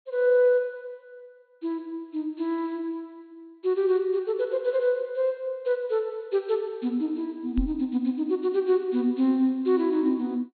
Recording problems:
treble missing; nothing above 4.3 kHz
microphone thump; at 7.5 s; peak -1 dB vs average level

